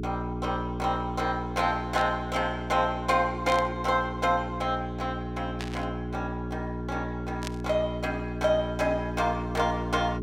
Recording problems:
hum; 60 Hz, harmonics up to 420 Hz, SNR 5 dB
burst of static; 4 times, first at 2 s; peak -3 dB vs average level

